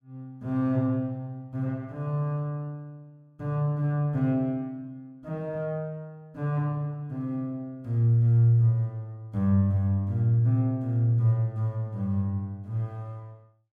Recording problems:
none

